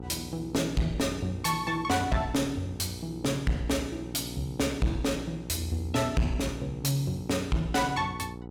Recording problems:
distortion; soft clipping, signal-to-distortion ratio 8 dB
hum; 60 Hz, harmonics up to 960 Hz, SNR 12 dB

